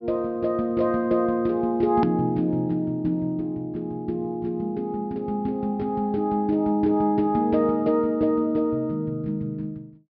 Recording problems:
treble cut off; nothing above 5.5 kHz
click at an edit; at 2 s

